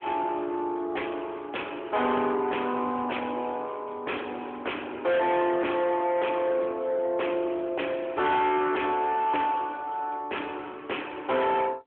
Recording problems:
phone line; 220 Hz to 3.4 kHz, AMR-NB
distortion; soft clipping, signal-to-distortion ratio 6 dB

